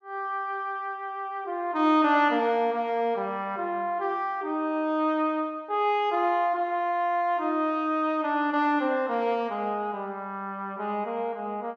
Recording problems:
none

